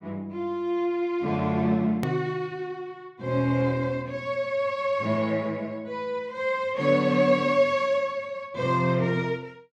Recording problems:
click at an edit; at 2 s

